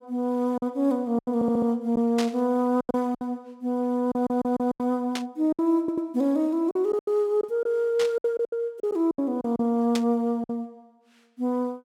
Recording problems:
packet loss; 10% of the sound replaced, filled with silence
stutter; at 1.5 s, at 4 s and at 6 s
burst of static; 4 times, first at 2 s; peak -2 dB vs average level

